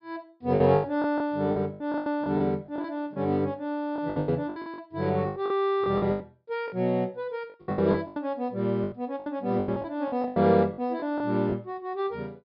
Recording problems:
low-pass filter; nothing above 5.5 kHz
lost packets; 15% of the sound replaced, filled with the last packet

